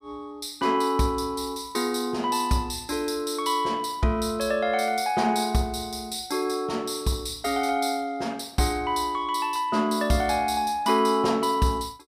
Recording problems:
none

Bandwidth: 15 kHz